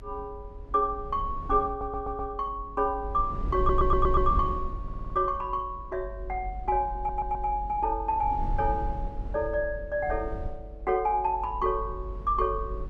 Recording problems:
low-frequency rumble; below 64 Hz, SNR 8 dB
stutter; 4 times, first at 1.5 s

